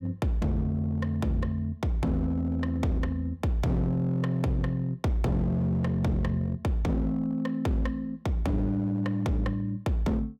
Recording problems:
distorted audio; hard clipping, signal-to-distortion ratio 10 dB

